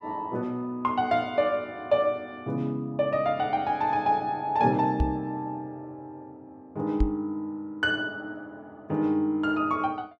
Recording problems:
microphone bump; at 5 s and at 7 s; peak +5 dB vs average level

